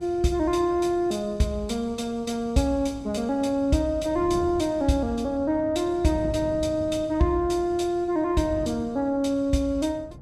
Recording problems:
wind noise; below 230 Hz, SNR 16 dB

